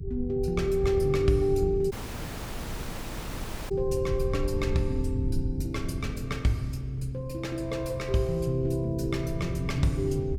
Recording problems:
electrical hum; 60 Hz, harmonics up to 420 Hz, SNR 19 dB
rumble; below 110 Hz, SNR 6 dB
dropout; at 2 s for 2 s

